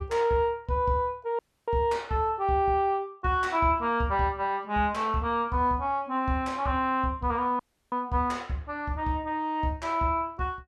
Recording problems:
dropout; at 1.5 s and at 7.5 s

